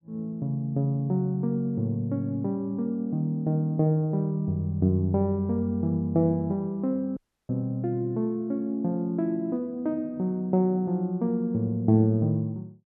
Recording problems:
dropout; at 7 s

